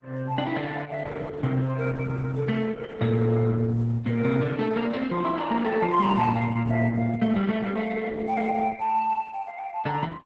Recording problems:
codec artefacts; Opus, then Opus, log-spectral distance 4 dB, nothing above 7.8 kHz

